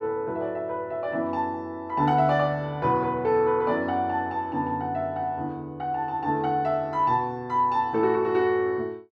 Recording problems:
none

